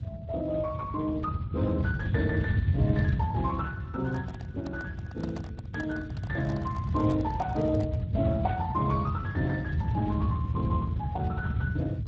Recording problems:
lossy compression; Speex, log-spectral distance 2 dB
low-frequency rumble; below 150 Hz, SNR 0 dB
handling noise; from 4 to 8 s; peak -3 dB vs average level

